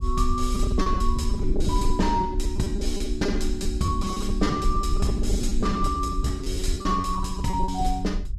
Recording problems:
rumble; below 62 Hz, SNR 3 dB
packet loss; 17% of the sound replaced, filled with repeated pitch periods

